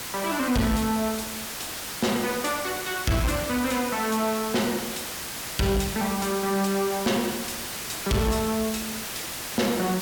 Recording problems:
distorted audio; soft clipping, signal-to-distortion ratio 12 dB
background hiss; slope -1 dB per octave, SNR 5 dB

